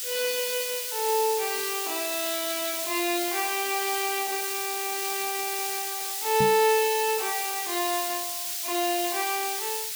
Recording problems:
hiss; SNR 1 dB
knock on the microphone; at 6.5 s; peak +1 dB vs average level

